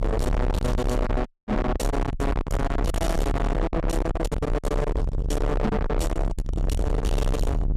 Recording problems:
distortion; soft clipping, signal-to-distortion ratio 5 dB
low-frequency rumble; below 440 Hz, SNR 1 dB
packet loss; 15% of the sound replaced, filled with silence
dropout; at 1.5 s

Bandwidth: 15 kHz